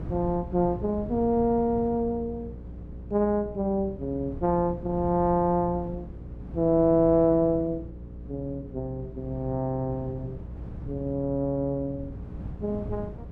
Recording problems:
hum; 60 Hz, harmonics up to 540 Hz, SNR 16 dB
wind on the microphone; below 200 Hz, SNR 15 dB

